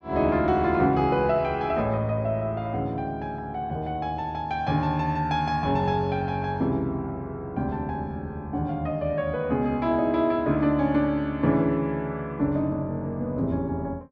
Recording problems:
none

